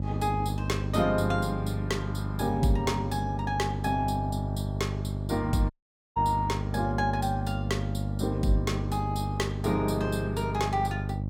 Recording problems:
hum; 50 Hz, harmonics up to 600 Hz, SNR 2 dB
audio cutting out; at 5.5 s

